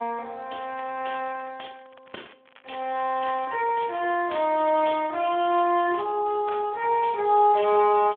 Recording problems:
phone line; 280 Hz to 3.4 kHz, Speex
crackling; from 0.5 to 2.5 s and from 2.5 to 5.5 s; loose cable, SNR 29 dB

